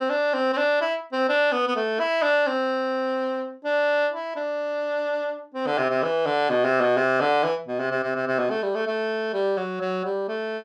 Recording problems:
none

